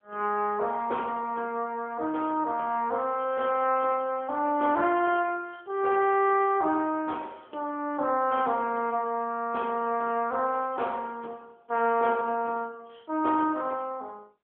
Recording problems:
phone line; 280 Hz to 3.4 kHz, AMR-NB

